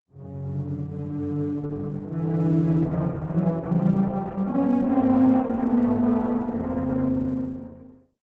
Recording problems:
lossy codec; Opus, log-spectral distance 2 dB

